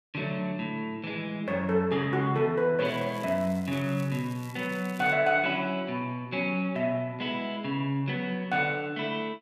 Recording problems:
crackle; from 3 to 5 s; loose cable, SNR 22 dB

